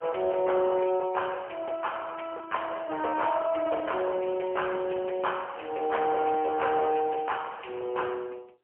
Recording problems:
phone line; 340 Hz to 3.1 kHz, AMR-NB, then MP3
distorted audio; hard clipping, signal-to-distortion ratio 14 dB

